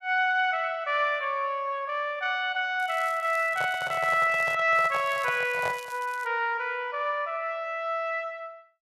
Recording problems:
crackling; from 3 to 4.5 s and from 4.5 to 6.5 s; loose cable, SNR 23 dB
microphone handling noise; from 3.5 to 6 s; peak -4 dB vs average level

